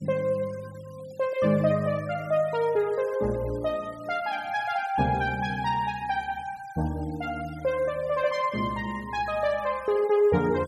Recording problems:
noise reduction artefacts; signal-to-artefact ratio 23 dB

